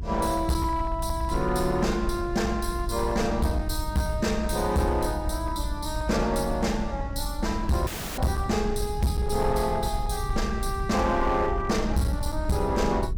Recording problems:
distorted audio; hard clipping, uneven, signal-to-distortion ratio 12 dB
electrical hum; 50 Hz, harmonics up to 900 Hz, SNR 21 dB
low-frequency rumble; below 72 Hz, SNR 6 dB
dropout; at 8 s

